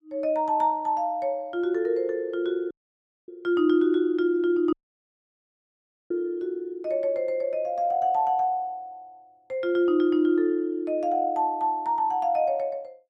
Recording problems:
dropout; at 2.5 s for 0.5 s and at 4.5 s for 1.5 s

